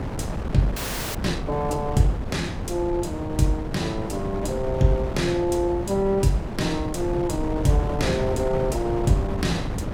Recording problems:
wind on the microphone; below 350 Hz, SNR 5 dB
audio freezing; at 1 s

